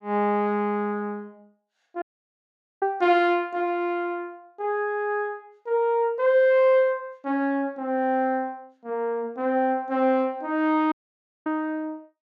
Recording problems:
audio cutting out; at 2 s for 1 s and at 11 s for 0.5 s

